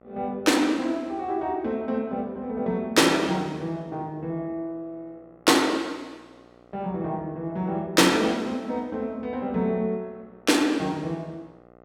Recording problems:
electrical hum; 60 Hz, harmonics up to 2 kHz, SNR 28 dB

